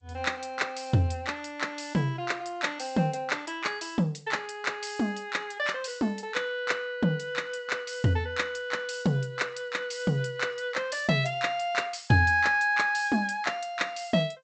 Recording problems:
lossy codec; G.722, log-spectral distance 4 dB, nothing above 8.2 kHz

